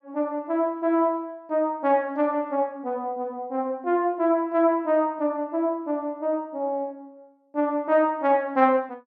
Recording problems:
none

